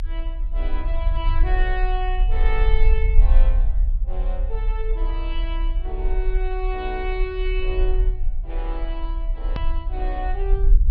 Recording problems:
low-pass filter; nothing above 5.5 kHz
low-frequency rumble; below 40 Hz, strongest tone 34 Hz, SNR -7 dB
hard cut with a click; at 9.5 s

